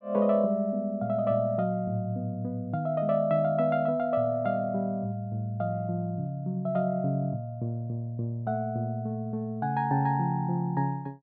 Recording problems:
treble cut off; nothing above 4.9 kHz

